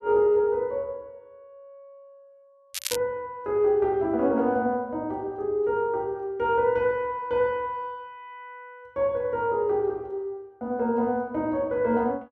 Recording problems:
crackle; at 2.5 s; loose cable, SNR 7 dB

